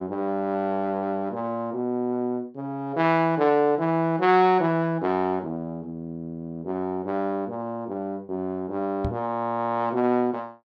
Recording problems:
microphone bump; at 9 s; peak -1 dB vs average level

